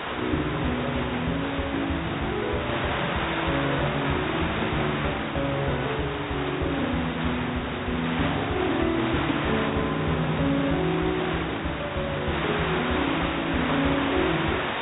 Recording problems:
treble cut off; nothing above 4 kHz
hiss; SNR 2 dB

